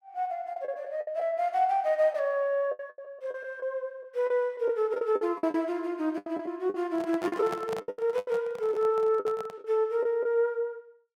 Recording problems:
packet loss; 11% of the sound replaced, filled with the last packet
handling noise; from 7 to 9.5 s; peak -4 dB vs average level

